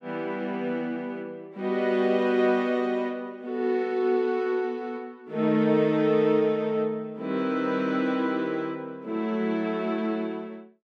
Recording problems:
none

